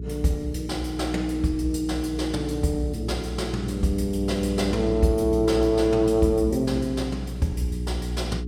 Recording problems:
hum; 60 Hz, harmonics up to 420 Hz, SNR 7 dB

